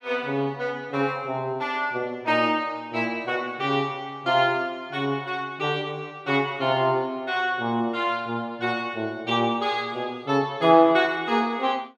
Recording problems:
none

